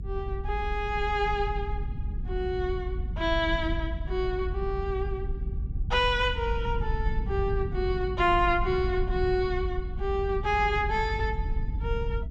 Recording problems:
rumble; below 76 Hz, SNR 4 dB

